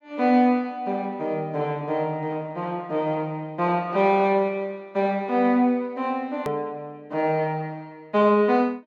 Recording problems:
click at an edit; at 6.5 s

